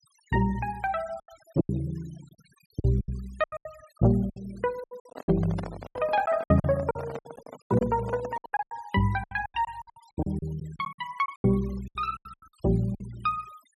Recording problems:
noise reduction artefacts; signal-to-artefact ratio 23 dB
lost packets; 17% of the sound replaced, filled with silence
microphone handling noise; from 5 to 8.5 s; peak -5 dB vs average level

